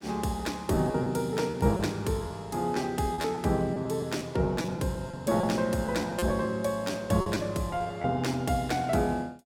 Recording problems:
packet loss; 8% of the sound replaced, filled with repeated pitch periods

